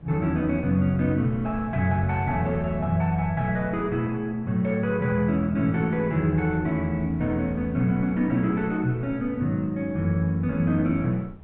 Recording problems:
low-pass filter; nothing above 4 kHz
wind noise; below 170 Hz, SNR 19 dB

